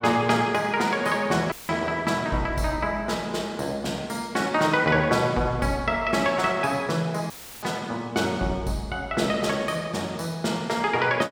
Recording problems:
audio cutting out; at 1.5 s and at 7.5 s; filled with static

